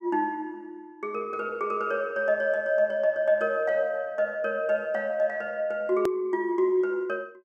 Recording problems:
edit click; at 6 s

